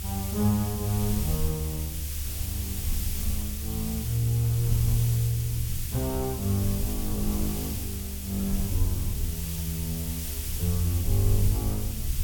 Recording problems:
background hiss; slope +2 dB per octave, SNR 5 dB
low-frequency rumble; below 74 Hz, SNR 4 dB

